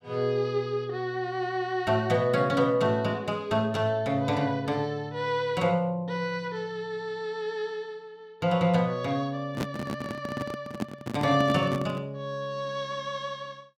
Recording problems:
microphone handling noise; from 9.5 to 12 s; peak +2 dB vs average level

